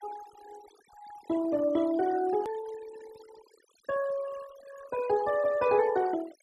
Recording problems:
denoising artefacts; signal-to-artefact ratio 19 dB
edit click; at 2.5 s

